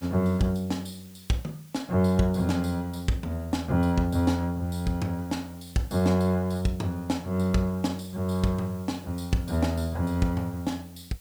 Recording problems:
background hiss; slope 0 dB per octave, SNR 25 dB

